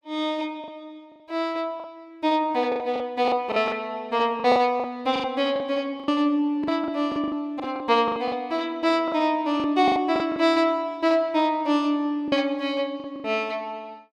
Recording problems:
lost packets; 11% of the sound replaced, filled with the last packet

